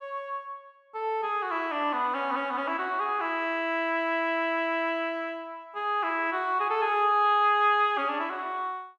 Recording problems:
none

